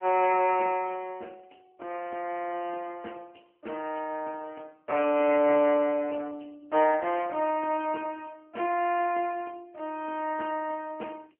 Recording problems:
telephone audio; 240 Hz to 3 kHz, AMR-NB

